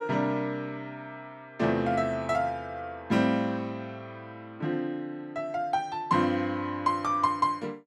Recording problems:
none

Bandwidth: 12.5 kHz